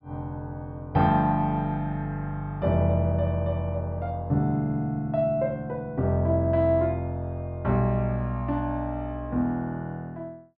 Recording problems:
treble cut off; nothing above 5.5 kHz

